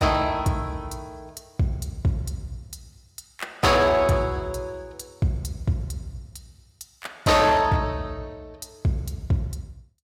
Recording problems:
distortion; hard clipping, signal-to-distortion ratio 11 dB

